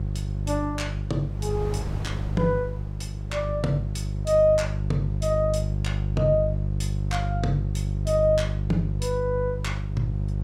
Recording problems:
electrical hum; 50 Hz, harmonics up to 400 Hz, SNR 2 dB
wind noise; below 460 Hz, SNR 19 dB

